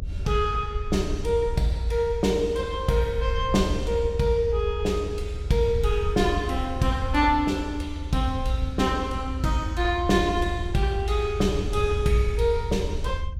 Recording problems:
rumble; below 80 Hz, SNR 6 dB

